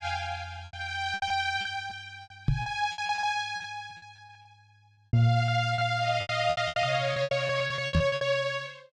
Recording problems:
lost packets; 18% of the sound replaced, filled with repeated pitch periods
microphone bump; at 2.5 s and at 8 s; peak +6 dB vs average level

